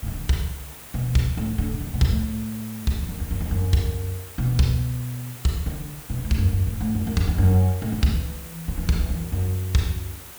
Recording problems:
hiss; slope -2 dB per octave, SNR 14 dB

